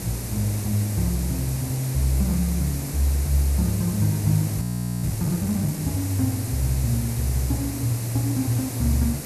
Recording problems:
background hiss; SNR 8 dB
audio freezing; at 4.5 s

